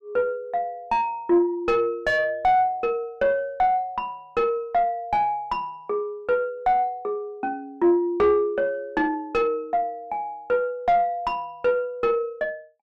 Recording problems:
distortion; soft clipping, signal-to-distortion ratio 9 dB

